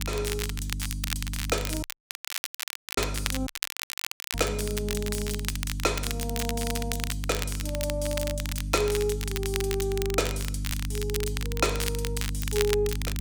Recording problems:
hum; 50 Hz, harmonics up to 300 Hz, SNR 3 dB
crackling; vinyl, SNR 3 dB
dropout; at 2 s for 1 s and at 3.5 s for 1 s

